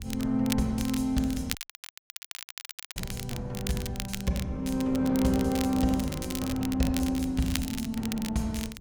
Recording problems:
low-frequency rumble; below 130 Hz, SNR 17 dB
crackling; vinyl, SNR 10 dB
dropout; at 1.5 s for 1.5 s

